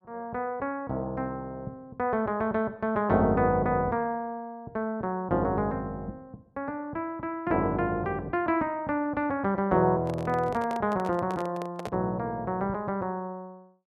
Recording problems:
handling noise; from 10 to 12 s; peak -3 dB vs average level

